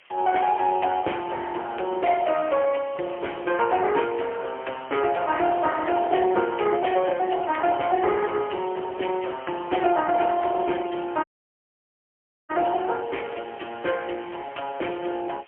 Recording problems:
telephone audio; 300 Hz to 3.2 kHz, AMR-NB, then MP3
background hiss; SNR 27 dB
audio cutting out; at 11 s for 1.5 s

